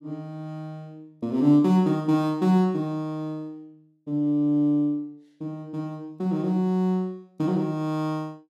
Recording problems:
none

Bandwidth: 14 kHz